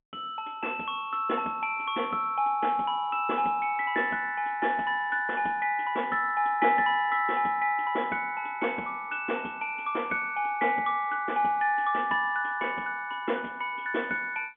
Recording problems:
telephone audio; 190 Hz to 3.4 kHz, G.711

